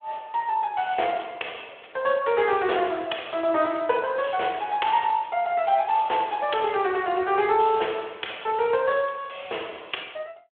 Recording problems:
phone line; 320 Hz to 3.4 kHz, Speex

